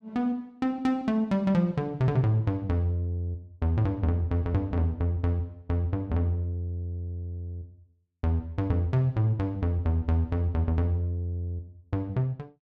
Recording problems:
none

